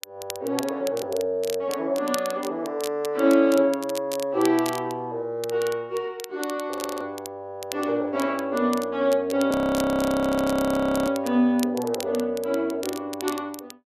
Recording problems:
crackle; vinyl, SNR 14 dB
frozen audio; at 6.5 s and at 9.5 s for 1.5 s

